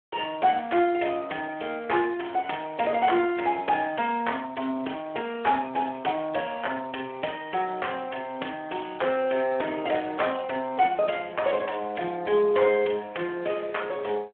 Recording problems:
phone line; 280 Hz to 3.3 kHz, Speex

